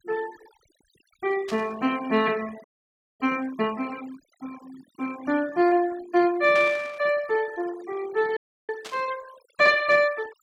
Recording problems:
noise reduction artefacts; signal-to-artefact ratio 21 dB
static burst; at 1.5 s, at 6.5 s and at 9 s; peak -7 dB vs average level
audio freezing; at 2.5 s for 0.5 s and at 8.5 s

